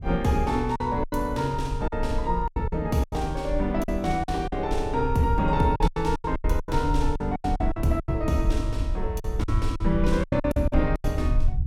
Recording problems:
rumble; below 68 Hz, SNR 5 dB
packet loss; 13% of the sound replaced, filled with silence

